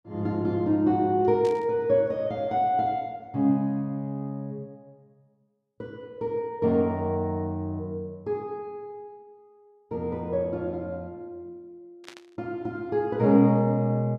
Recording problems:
static burst; at 1.5 s and at 12 s; peak -12 dB vs average level

